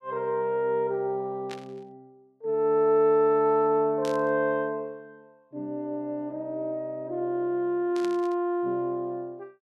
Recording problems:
static burst; at 1.5 s, at 4 s and at 8 s; peak -10 dB vs average level

